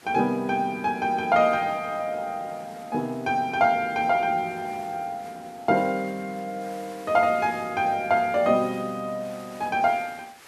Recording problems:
background hiss; SNR 23 dB

